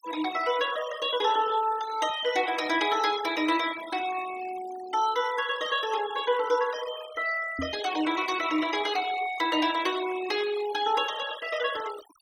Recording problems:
noise reduction artefacts; signal-to-artefact ratio 13 dB
microphone thump; at 7.5 s; peak -3 dB vs average level

